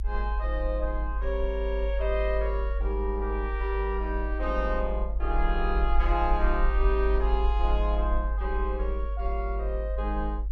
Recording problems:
low-frequency rumble; below 52 Hz, strongest tone 50 Hz, SNR -1 dB

